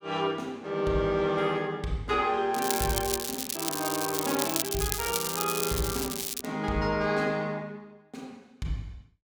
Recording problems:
crackle; from 2.5 to 6.5 s; loose cable, SNR 1 dB

